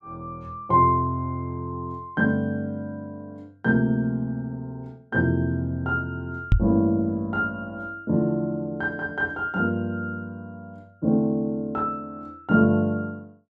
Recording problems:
microphone thump; at 6.5 s; peak +9 dB vs average level

